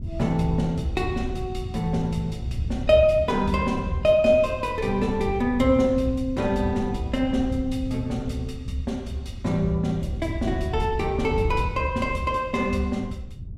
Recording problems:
wind noise; below 120 Hz, SNR 9 dB

